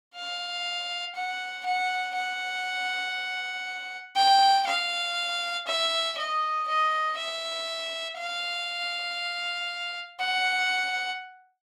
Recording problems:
none

